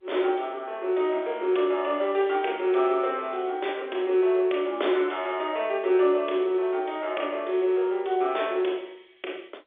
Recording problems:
phone line; 320 Hz to 3.6 kHz, G.711

